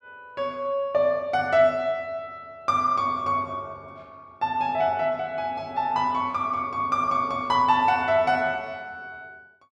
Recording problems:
none

